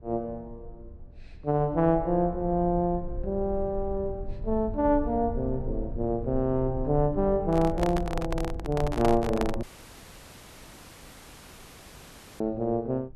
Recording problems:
rumble; below 68 Hz, SNR 11 dB
handling noise; from 7.5 to 9.5 s; peak +1 dB vs average level
audio cutting out; at 9.5 s for 3 s

